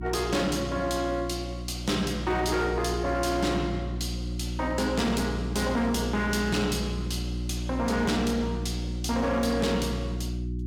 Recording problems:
distorted audio; hard clipping, signal-to-distortion ratio 11 dB
mains hum; 60 Hz, harmonics up to 360 Hz, SNR 5 dB

